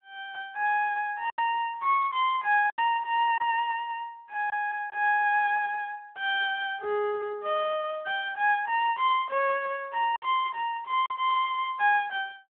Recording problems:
telephone audio; 370 Hz to 3.3 kHz, Speex
packet loss; 3% of the sound replaced, filled with silence

